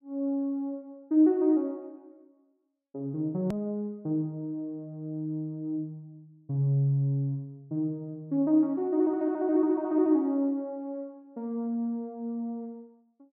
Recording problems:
hard cut with a click; at 3.5 s

